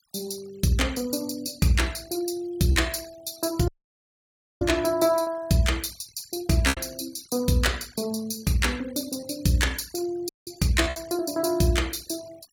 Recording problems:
noise reduction artefacts; signal-to-artefact ratio 21 dB
packet loss; 3% of the sound replaced, filled with repeated pitch periods
dropout; at 3.5 s for 1 s and at 10 s

